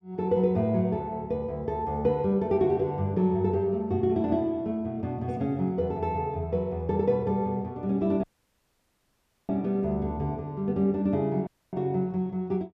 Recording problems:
audio cutting out; at 8 s for 1.5 s and at 11 s

